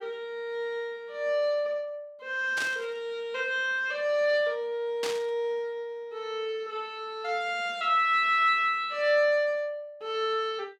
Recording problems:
static burst; at 2.5 s and at 5 s; peak -2 dB vs average level

